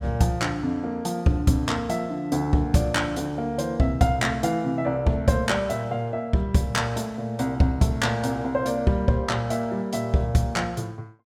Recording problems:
none

